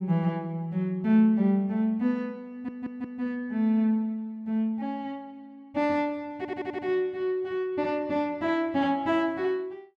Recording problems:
stutter; at 2.5 s and at 6.5 s

